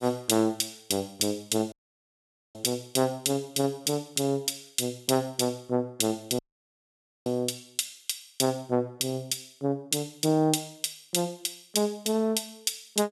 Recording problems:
audio cutting out; at 1.5 s for 1 s and at 6.5 s for 1 s

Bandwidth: 14.5 kHz